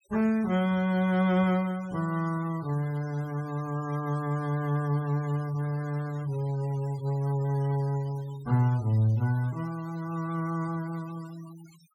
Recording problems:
noise reduction artefacts; signal-to-artefact ratio 23 dB

